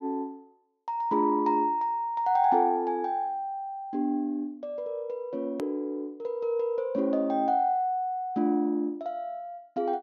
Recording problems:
low-pass filter; nothing above 6.6 kHz
edit click; at 5.5 s

